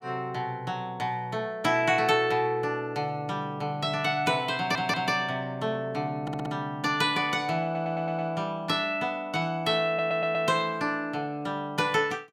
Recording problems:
stutter; 4 times, first at 4.5 s

